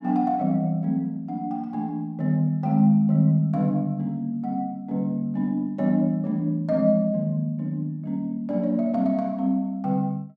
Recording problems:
none

